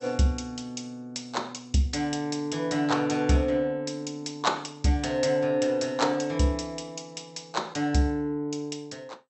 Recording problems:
lossy compression; MP2, log-spectral distance 3 dB, nothing above 7.8 kHz

